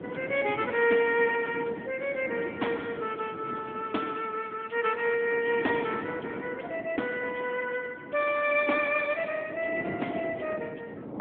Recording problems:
telephone audio; 260 Hz to 3.4 kHz, AMR-NB
wind noise; below 500 Hz, SNR 11 dB

